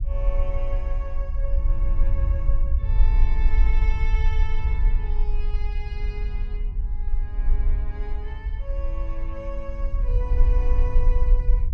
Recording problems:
low-frequency rumble; below 48 Hz, strongest tone 22 Hz, SNR -13 dB

